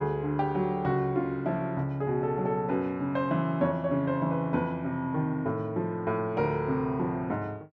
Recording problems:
none

